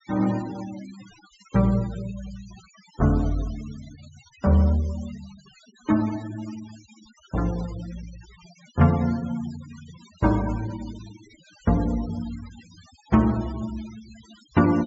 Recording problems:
treble missing; nothing above 8 kHz
noise reduction artefacts; signal-to-artefact ratio 20 dB

